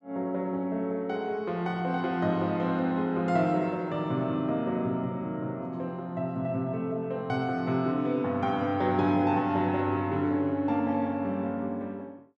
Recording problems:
none

